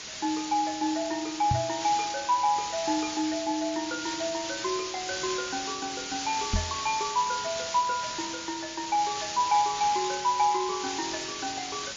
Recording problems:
lossy codec; MP3, log-spectral distance 18 dB
background hiss; slope +1 dB per octave, SNR 5 dB
knock on the microphone; at 1.5 s and at 6.5 s; peak +4 dB vs average level

